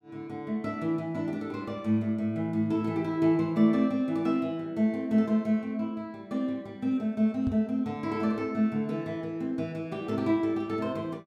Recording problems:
knock on the microphone; at 7.5 s; peak -1 dB vs average level

